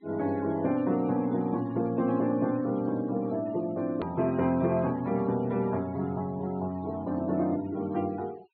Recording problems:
treble missing; nothing above 4.4 kHz
noise reduction artefacts; signal-to-artefact ratio 23 dB
edit click; at 4 s

